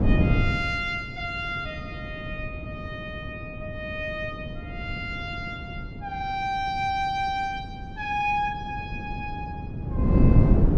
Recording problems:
wind on the microphone; below 220 Hz, SNR -1 dB

